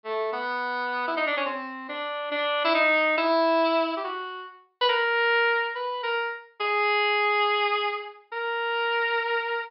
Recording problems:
treble cut off; nothing above 5.2 kHz

